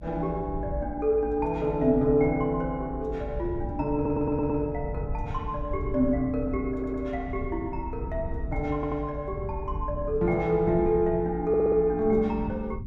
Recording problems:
low-frequency rumble; below 100 Hz, SNR 10 dB
audio stuttering; 4 times, first at 4 s

